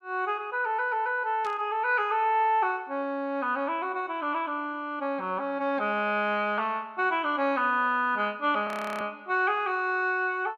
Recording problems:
burst of static; at 1.5 s; peak -14 dB vs average level
frozen audio; at 8.5 s

